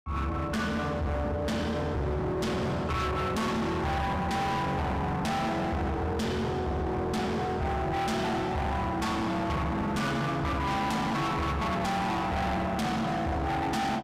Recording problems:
distortion; hard clipping, uneven, signal-to-distortion ratio 6 dB

